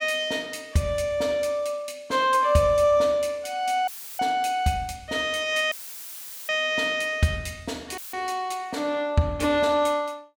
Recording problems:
dropout; at 4 s, at 5.5 s for 1 s and at 8 s; filled with static

